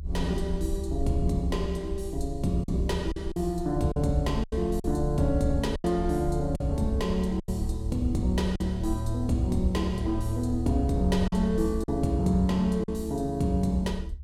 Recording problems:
rumble; below 72 Hz, SNR 7 dB
packet loss; 5% of the sound replaced, filled with silence

